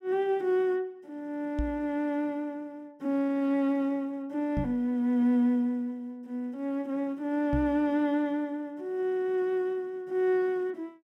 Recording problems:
microphone thump; at 1.5 s, at 4.5 s and at 7.5 s; peak +1 dB vs average level

